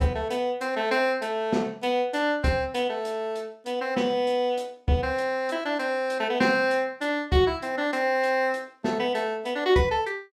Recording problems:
none

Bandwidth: 16 kHz